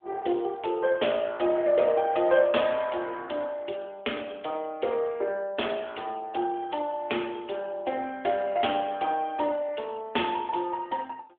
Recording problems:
phone line; 260 Hz to 3.5 kHz, AMR-NB

